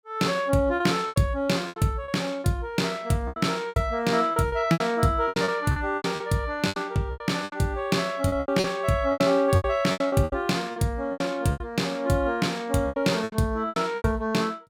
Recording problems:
lost packets; 15% of the sound replaced, filled with repeated pitch periods

